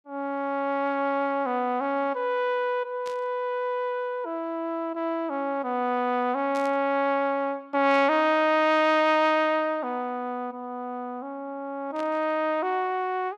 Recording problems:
burst of static; 4 times, first at 3 s; peak -13 dB vs average level

